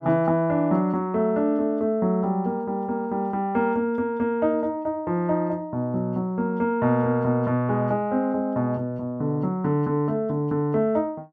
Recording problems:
none

